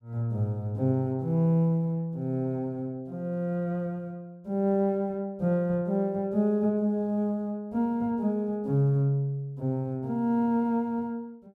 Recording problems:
none

